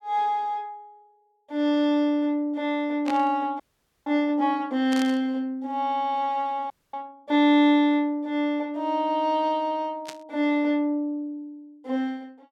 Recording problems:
static burst; at 3 s, at 5 s and at 10 s; peak -8 dB vs average level
frozen audio; at 3.5 s and at 6.5 s

